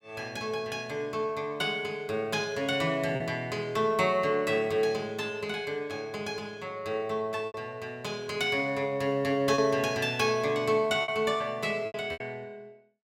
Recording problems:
lost packets; 3% of the sound replaced, filled with repeated pitch periods

